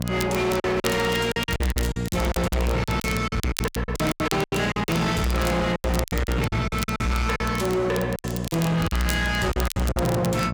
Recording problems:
distorted audio; hard clipping, signal-to-distortion ratio 7 dB
hum; 60 Hz, harmonics up to 1.3 kHz, SNR 6 dB
crackling; vinyl, SNR 13 dB
packet loss; 17% of the sound replaced, filled with silence

